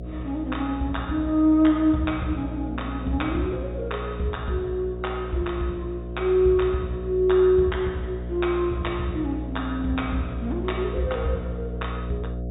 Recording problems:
treble missing; nothing above 4 kHz
hum; 60 Hz, harmonics up to 720 Hz, SNR 8 dB

